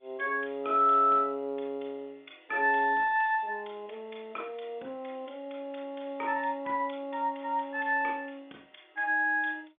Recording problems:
telephone audio; 240 Hz to 3.6 kHz, G.711

